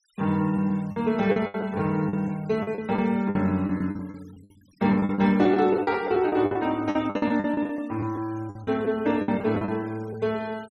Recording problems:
denoising artefacts; signal-to-artefact ratio 26 dB
packet loss; 14% of the sound replaced, filled with the last packet

